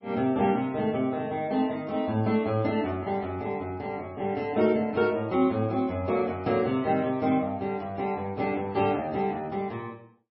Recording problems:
codec artefacts; MP3, log-spectral distance 2 dB, nothing above 5.3 kHz

